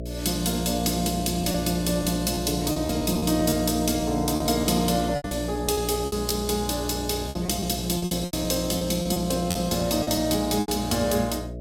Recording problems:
hum; 60 Hz, harmonics up to 660 Hz, SNR 9 dB
packet loss; 10% of the sound replaced, filled with repeated pitch periods

